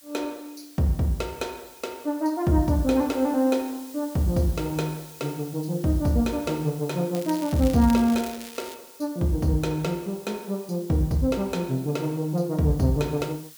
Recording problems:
hiss; slope +3 dB per octave, SNR 20 dB
crackling; from 7 to 8.5 s; loose cable, SNR 15 dB

